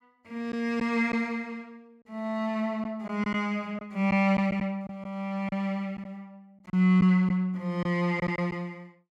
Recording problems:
packet loss; 4% of the sound replaced, filled with silence

